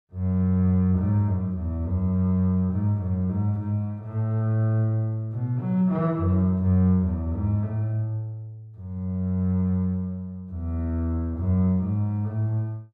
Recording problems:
none

